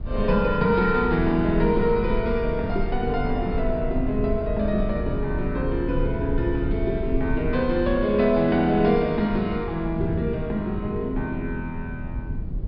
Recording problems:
treble missing; nothing above 5.5 kHz
rumble; below 66 Hz, SNR 9 dB
wind noise; below 180 Hz, SNR 14 dB

